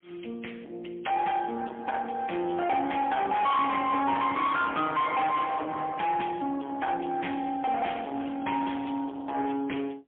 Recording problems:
phone line; 220 Hz to 3.4 kHz, AMR-NB, then MP3
distortion; soft clipping, signal-to-distortion ratio 7 dB
crackling; from 7.5 to 9 s; loose cable, SNR 23 dB

